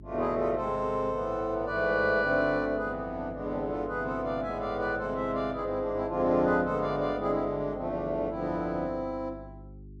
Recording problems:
hum; 50 Hz, harmonics up to 400 Hz, SNR 18 dB

